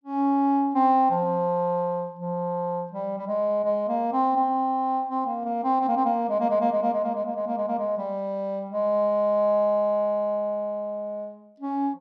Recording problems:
none

